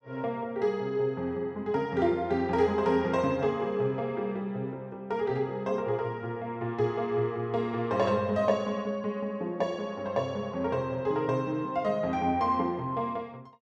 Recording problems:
none

